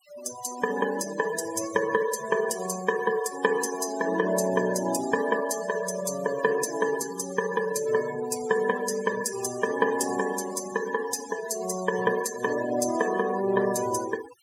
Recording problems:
denoising artefacts; signal-to-artefact ratio 11 dB

